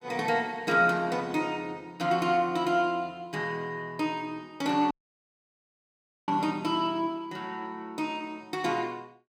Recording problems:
dropout; at 5 s for 1.5 s

